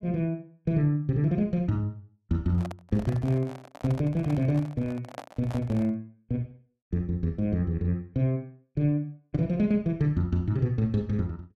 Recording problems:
microphone handling noise; from 2.5 to 6 s; peak -6 dB vs average level

